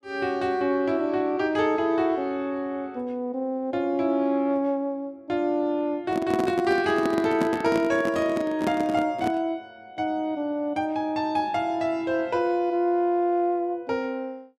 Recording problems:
handling noise; from 6 to 9.5 s; peak +2 dB vs average level

